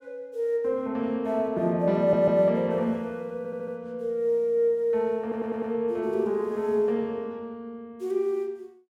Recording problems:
stutter; at 2 s, at 3.5 s and at 5 s

